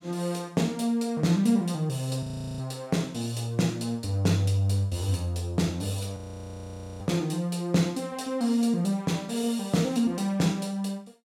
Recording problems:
audio freezing; at 2 s and at 6 s for 1 s

